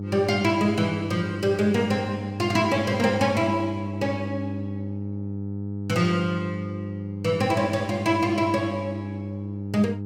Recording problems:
hum; 50 Hz, harmonics up to 500 Hz, SNR 7 dB

